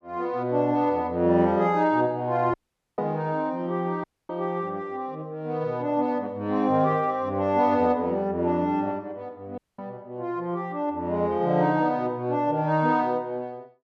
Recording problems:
dropout; at 2.5 s, at 4 s and at 9.5 s

